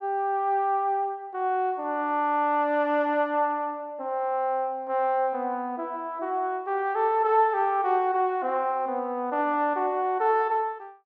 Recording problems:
none

